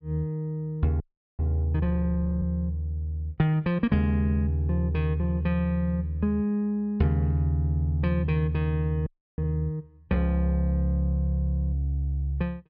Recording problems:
treble cut off; nothing above 5.5 kHz
audio freezing; at 1 s and at 9 s

